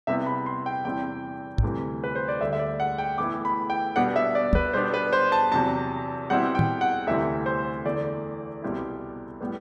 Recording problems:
microphone bump; at 1.5 s, at 4.5 s and at 6.5 s; peak +7 dB vs average level

